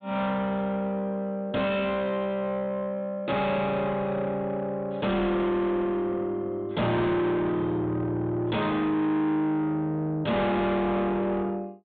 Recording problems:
treble cut off; nothing above 4 kHz
distorted audio; soft clipping, signal-to-distortion ratio 7 dB

